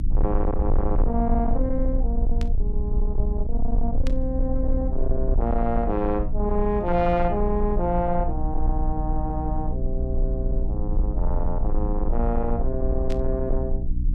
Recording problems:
distortion; soft clipping, signal-to-distortion ratio 12 dB
hum; 60 Hz, harmonics up to 300 Hz, SNR 4 dB
rumble; below 46 Hz, strongest tone 18 Hz, SNR 1 dB
static burst; at 2.5 s, at 4 s and at 13 s; peak -7 dB vs average level

